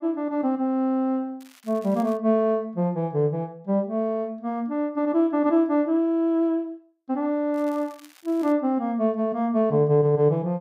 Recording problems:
crackling; at 1.5 s and at 7.5 s; loose cable, SNR 28 dB

